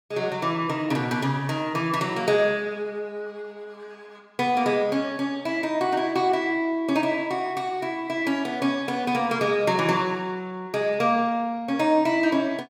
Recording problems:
none

